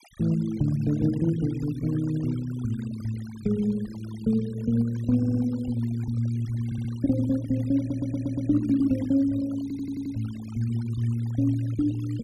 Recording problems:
noise reduction artefacts; signal-to-artefact ratio 21 dB
stutter; 4 times, first at 5 s

